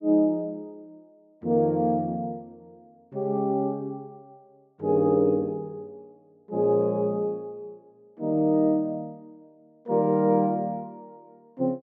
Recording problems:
none

